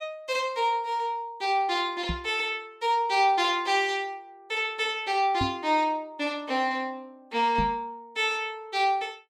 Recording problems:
microphone bump; at 2 s, at 5.5 s and at 7.5 s; peak 0 dB vs average level

